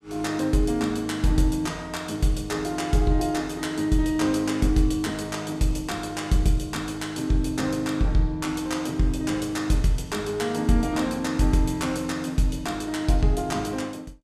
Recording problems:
none

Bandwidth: 14.5 kHz